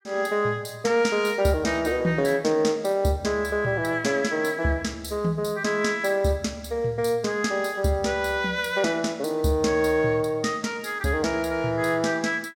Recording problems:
none

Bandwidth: 17 kHz